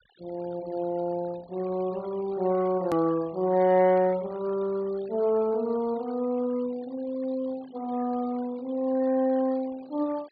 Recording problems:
low-pass filter; nothing above 4.7 kHz
noise reduction artefacts; signal-to-artefact ratio 22 dB
click at an edit; at 3 s

